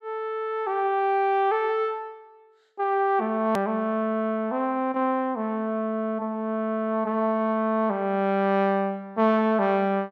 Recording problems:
hard cut with a click; at 3.5 s

